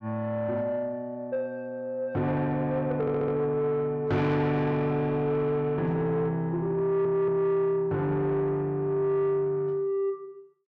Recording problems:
distortion; soft clipping, signal-to-distortion ratio 12 dB
stutter; at 3 s and at 7 s

